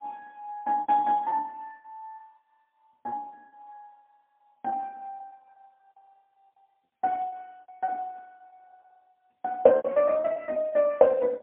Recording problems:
telephone audio; 170 Hz to 3.4 kHz, AMR-NB, then MP3
packet loss; 15% of the sound replaced, filled with repeated pitch periods

